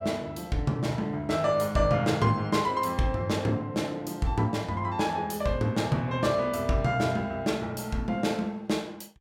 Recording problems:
none

